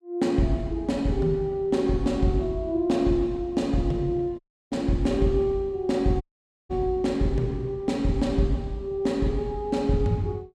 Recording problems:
audio cutting out; at 4.5 s and at 6 s

